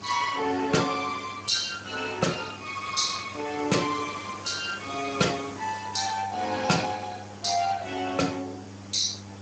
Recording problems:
lossy compression; Speex, log-spectral distance 11 dB
hum; 50 Hz, harmonics up to 800 Hz, SNR 17 dB
background hiss; slope -4 dB per octave, SNR 16 dB

